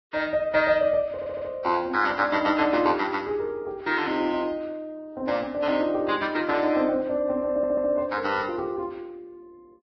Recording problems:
codec artefacts; Vorbis, log-spectral distance 3 dB, nothing above 5.5 kHz
audio stuttering; at 1 s and at 7.5 s

